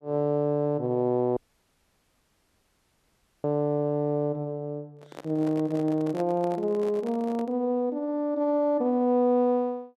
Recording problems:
dropout; at 1.5 s for 2 s
microphone handling noise; from 5 to 7.5 s; peak -9 dB vs average level

